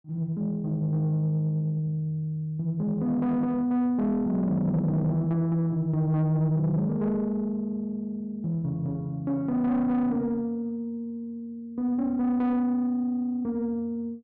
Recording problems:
distorted audio; soft clipping, signal-to-distortion ratio 12 dB

